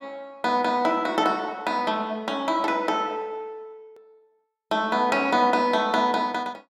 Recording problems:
click at an edit; at 4 s

